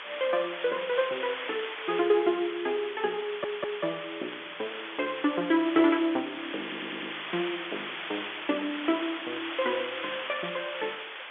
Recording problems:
phone line; 280 Hz to 3.5 kHz, G.711
hiss; SNR 6 dB
burst of static; 4 times, first at 1.5 s; peak -9 dB vs average level
stutter; at 3 s and at 6.5 s

